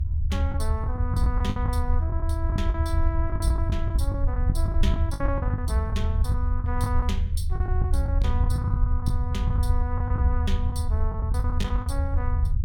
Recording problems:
rumble; below 80 Hz, SNR -7 dB
lost packets; 12% of the sound replaced, filled with the last packet

